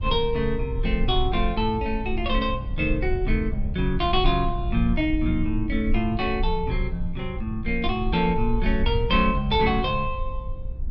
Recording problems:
low-frequency rumble; below 60 Hz, SNR 5 dB

